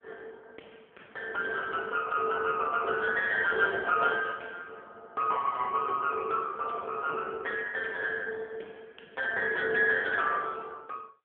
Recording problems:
phone line; 280 Hz to 3.4 kHz, AMR-NB

